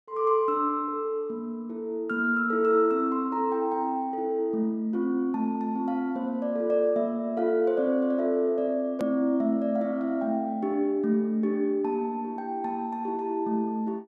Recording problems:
edit click; at 9 s

